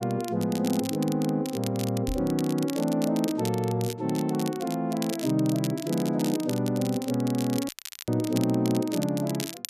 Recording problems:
crackling; vinyl, SNR 12 dB
knock on the microphone; at 2 s; peak -2 dB vs average level
audio cutting out; at 7.5 s

